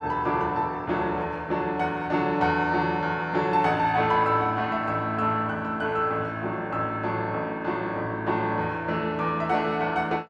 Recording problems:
none

